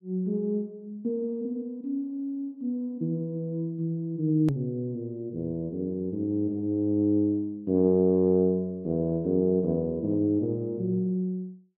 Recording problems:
edit click; at 4.5 s

